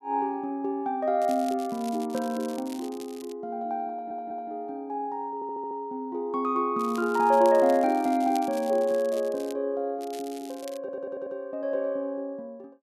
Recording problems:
crackling; from 1 to 3.5 s, from 7 to 9.5 s and from 10 to 11 s; loose cable, SNR 19 dB
stutter; at 4 s, at 5.5 s and at 11 s

